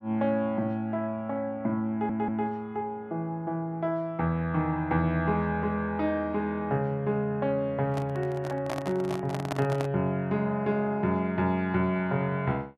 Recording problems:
audio stuttering; at 2 s
handling noise; from 8 to 10 s; peak +1 dB vs average level

